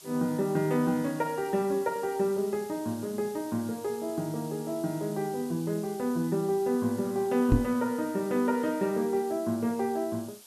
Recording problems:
hiss; SNR 19 dB
microphone bump; at 7.5 s; peak +8 dB vs average level

